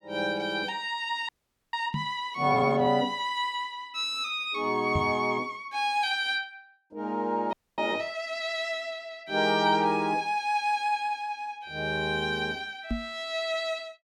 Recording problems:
audio freezing; at 1.5 s and at 7.5 s
microphone thump; at 2 s, at 5 s and at 13 s; peak +2 dB vs average level

